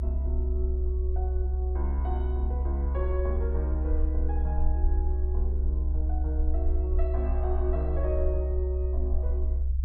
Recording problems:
rumble; below 68 Hz, strongest tone 66 Hz, SNR -8 dB

